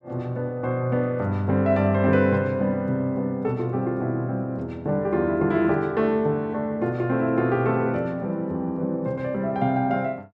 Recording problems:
none

